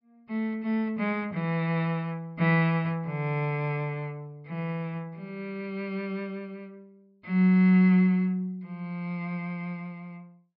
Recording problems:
treble cut off; nothing above 5.5 kHz

